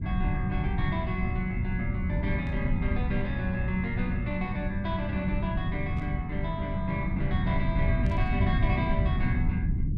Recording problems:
rumble; below 140 Hz, SNR -1 dB
static burst; at 2.5 s, at 6 s and at 8 s; peak -16 dB vs average level

